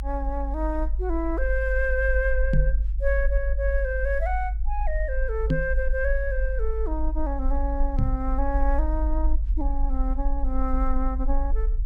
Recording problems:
rumble; below 50 Hz, SNR -2 dB
knock on the microphone; at 2.5 s, at 5.5 s and at 8 s; peak +8 dB vs average level

